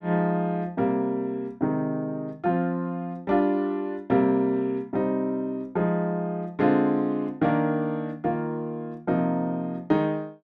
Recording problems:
none

